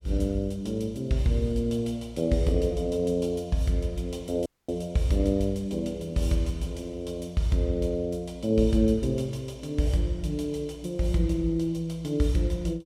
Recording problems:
dropout; at 4.5 s

